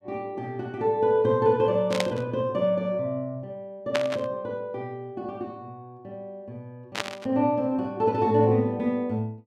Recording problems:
static burst; at 2 s, at 4 s and at 7 s; peak +3 dB vs average level

